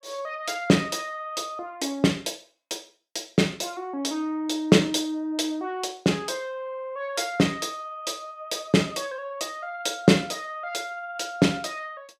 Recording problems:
none

